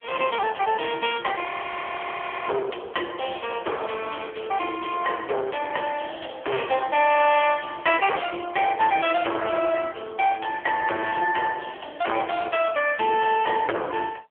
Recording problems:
phone line; 300 Hz to 3.4 kHz, AMR-NB
distorted audio; hard clipping, signal-to-distortion ratio 6 dB
frozen audio; at 1.5 s for 1 s

